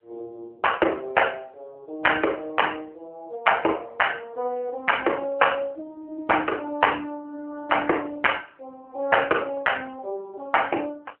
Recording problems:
phone line; 300 Hz to 3 kHz, AMR-NB

